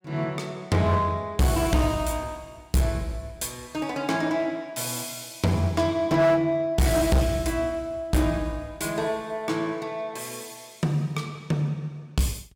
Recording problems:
distorted audio; hard clipping, uneven, signal-to-distortion ratio 10 dB

